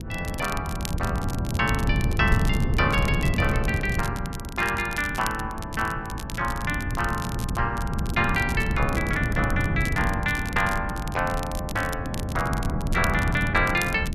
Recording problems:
wind noise; below 190 Hz, SNR 2 dB
crackle; vinyl, SNR 13 dB

